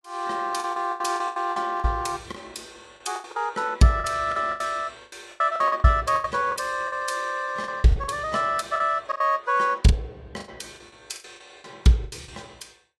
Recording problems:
lossy codec; AAC, log-spectral distance 3 dB, nothing above 11.3 kHz
packet loss; 15% of the sound replaced, filled with the last packet

